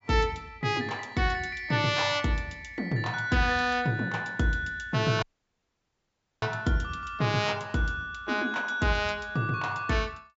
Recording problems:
treble missing; nothing above 8 kHz
audio cutting out; at 5 s for 1 s

